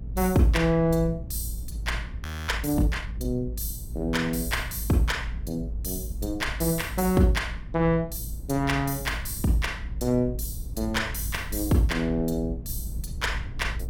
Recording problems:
hum; 60 Hz, harmonics up to 480 Hz, SNR 20 dB
low-frequency rumble; below 78 Hz, strongest tone 54 Hz, SNR 9 dB
frozen audio; at 2.5 s

